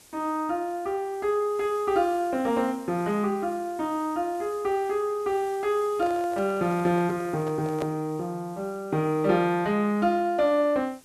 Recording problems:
hiss; SNR 24 dB
handling noise; from 6 to 8 s; peak -4 dB vs average level

